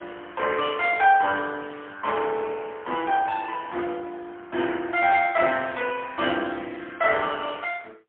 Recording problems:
phone line; 240 Hz to 3.4 kHz, AMR-NB, then MP3

